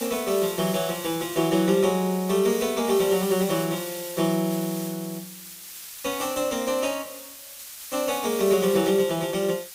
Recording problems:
background hiss; SNR 12 dB

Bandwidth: 15.5 kHz